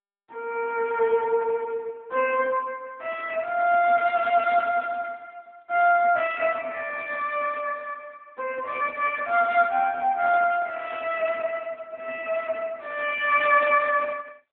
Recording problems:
phone line; 260 Hz to 3.4 kHz, AMR-NB

